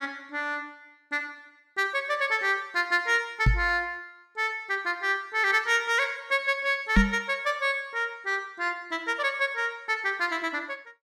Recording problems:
microphone thump; at 3.5 s and at 7 s; peak +9 dB vs average level

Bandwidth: 14.5 kHz